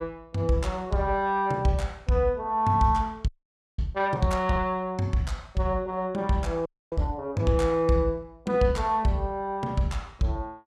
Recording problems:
audio freezing; at 3.5 s for 0.5 s and at 6.5 s

